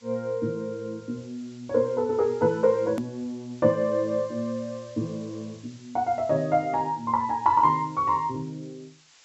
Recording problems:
low-pass filter; nothing above 7.8 kHz
background hiss; slope +2 dB per octave, SNR 27 dB
edit click; at 3 s

